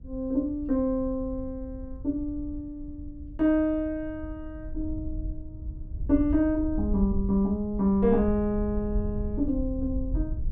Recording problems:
wind on the microphone; below 74 Hz, SNR 9 dB

